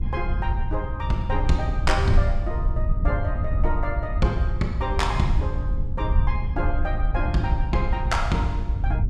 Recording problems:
low-frequency rumble; below 82 Hz, SNR -2 dB

